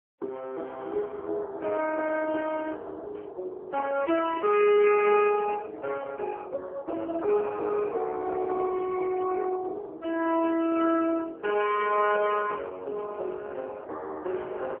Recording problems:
phone line; 280 Hz to 3.3 kHz, AMR-NB

